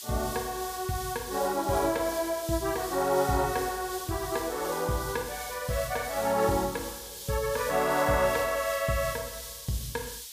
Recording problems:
hiss; SNR 10 dB

